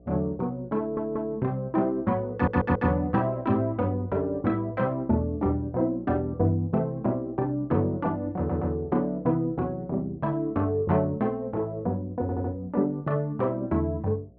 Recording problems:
treble missing; nothing above 8 kHz
electrical hum; 60 Hz, harmonics up to 720 Hz, SNR 26 dB
audio stuttering; 4 times, first at 1 s

